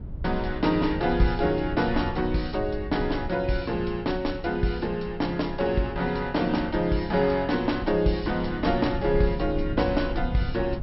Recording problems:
low-pass filter; nothing above 5.5 kHz
rumble; below 88 Hz, SNR 11 dB
wind noise; below 280 Hz, SNR 18 dB

